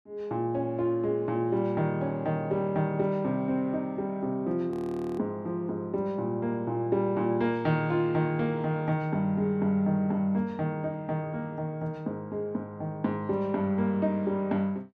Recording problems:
audio freezing; at 4.5 s

